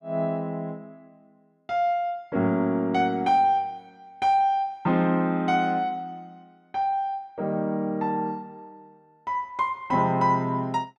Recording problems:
none

